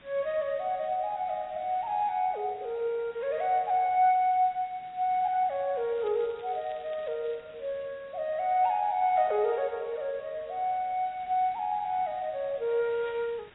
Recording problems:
lossy compression; AAC, log-spectral distance 3 dB, nothing above 3.8 kHz
hiss; SNR 27 dB
crackling; from 6 to 7.5 s; loose cable, SNR 27 dB

